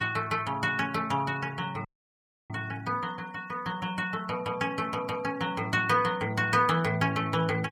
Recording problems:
denoising artefacts; signal-to-artefact ratio 23 dB
dropout; at 2 s for 0.5 s

